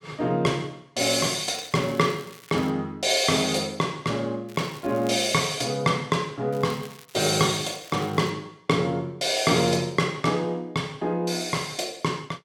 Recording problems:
crackling; from 1.5 to 2.5 s, at 4.5 s and from 6.5 to 8.5 s; loose cable, SNR 22 dB

